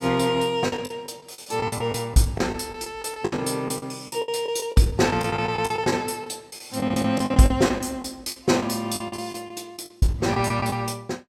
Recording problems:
packet loss; 16% of the sound replaced, filled with the last packet

